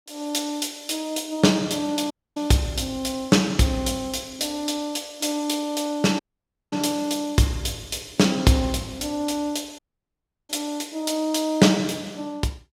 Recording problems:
dropout; at 2 s, at 6 s for 0.5 s and at 10 s for 0.5 s

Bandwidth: 16 kHz